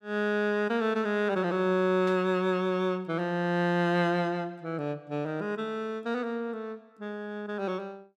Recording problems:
static burst; at 2 s; peak -10 dB vs average level

